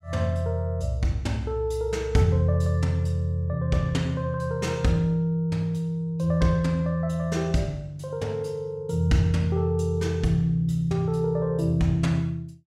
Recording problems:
none

